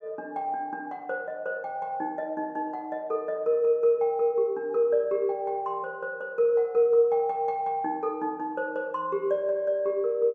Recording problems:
none

